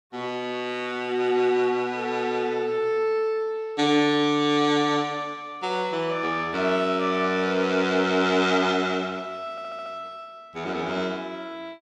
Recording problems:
audio stuttering; at 9.5 s

